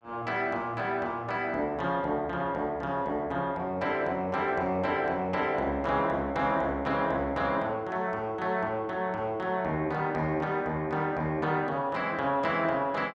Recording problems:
none

